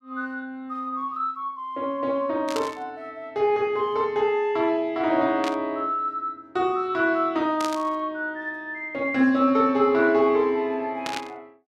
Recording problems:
static burst; 4 times, first at 2.5 s; peak -3 dB vs average level

